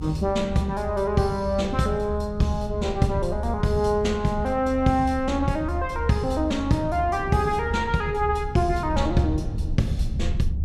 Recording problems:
low-frequency rumble; below 76 Hz, SNR 7 dB
wind on the microphone; below 300 Hz, SNR 19 dB

